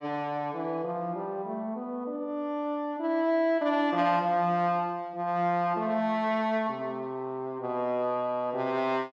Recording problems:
none

